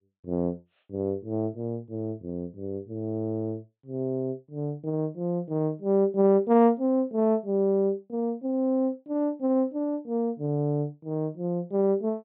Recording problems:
treble cut off; nothing above 4 kHz

